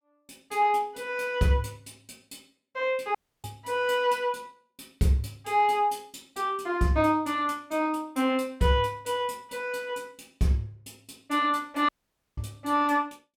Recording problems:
audio cutting out; at 3 s and at 12 s

